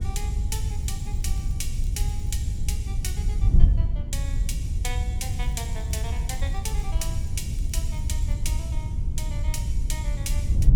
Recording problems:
wind on the microphone; below 82 Hz, SNR -8 dB
crackle; from 0.5 to 2.5 s and from 5.5 to 8.5 s; loose cable, SNR 22 dB

